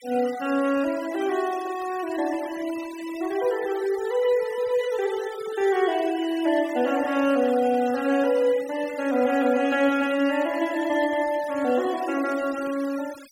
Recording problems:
noise reduction artefacts; signal-to-artefact ratio 18 dB

